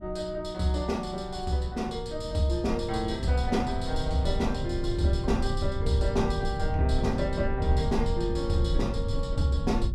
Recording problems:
low-frequency rumble; below 94 Hz, SNR 4 dB

